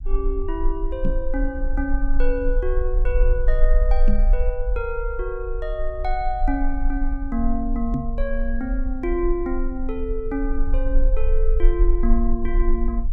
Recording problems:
rumble; below 38 Hz, strongest tone 22 Hz, SNR -2 dB
microphone bump; at 1 s, at 4 s and at 8 s; peak +6 dB vs average level

